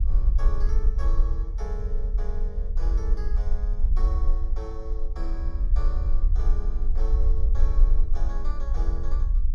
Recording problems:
rumble; below 46 Hz, SNR -14 dB

